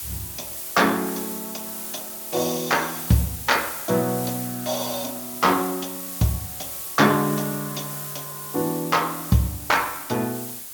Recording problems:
codec artefacts; Speex, log-spectral distance 4 dB
hiss; slope 0 dB per octave, SNR 7 dB

